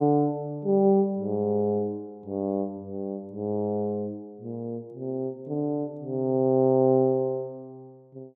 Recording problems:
none

